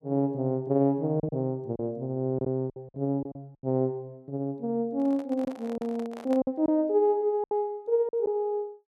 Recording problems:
lost packets; 6% of the sound replaced, filled with silence
handling noise; from 5 to 6.5 s; peak -8 dB vs average level

